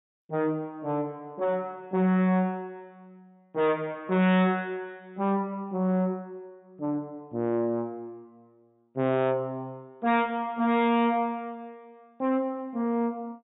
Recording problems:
low-pass filter; nothing above 4 kHz
distortion; soft clipping, signal-to-distortion ratio 10 dB

